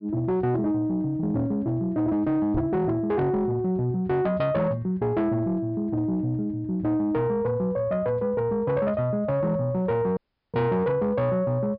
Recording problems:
low-pass filter; nothing above 5.5 kHz
distortion; soft clipping, signal-to-distortion ratio 12 dB
knock on the microphone; at 2.5 s; peak 0 dB vs average level
audio cutting out; at 10 s

